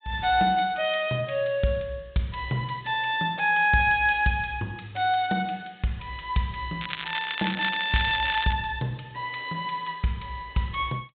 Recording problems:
treble cut off; nothing above 4 kHz
crackling; from 7 to 8.5 s; loose cable, SNR 7 dB

